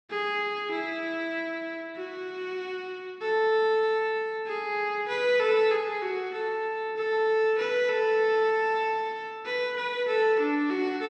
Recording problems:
none

